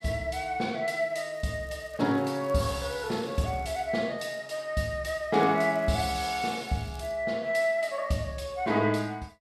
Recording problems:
crackling; from 1.5 to 4 s, at 4 s and from 5.5 to 7 s; loose cable, SNR 28 dB

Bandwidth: 14.5 kHz